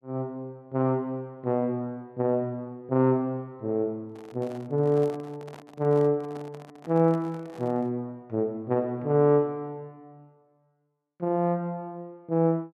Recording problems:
handling noise; from 4 to 8 s; peak -12 dB vs average level

